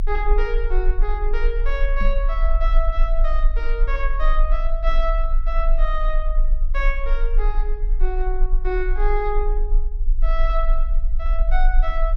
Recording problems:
rumble; below 34 Hz, strongest tone 22 Hz, SNR -5 dB
knock on the microphone; at 2 s; peak 0 dB vs average level

